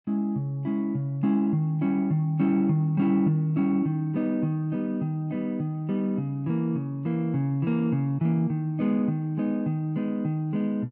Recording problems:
none

